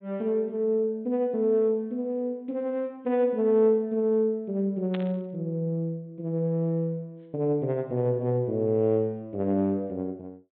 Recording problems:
treble missing; nothing above 4 kHz
burst of static; at 5 s; peak -8 dB vs average level

